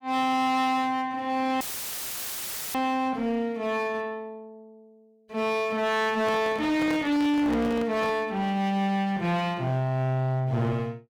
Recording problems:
distorted audio; hard clipping, uneven, signal-to-distortion ratio 6 dB
dropout; at 1.5 s for 1 s; filled with static
handling noise; from 6 to 8 s; peak -4 dB vs average level

